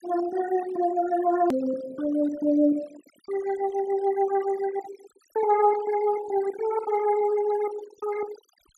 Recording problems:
noise reduction artefacts; signal-to-artefact ratio 19 dB
edit click; at 1.5 s

